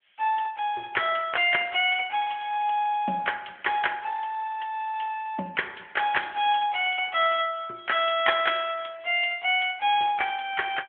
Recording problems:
phone line; 240 Hz to 3.4 kHz, AMR-NB

